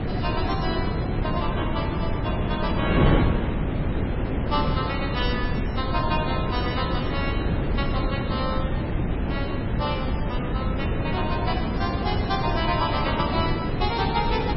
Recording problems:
lossy codec; MP3, log-spectral distance 4 dB, nothing above 5.5 kHz
wind on the microphone; below 330 Hz, SNR -3 dB

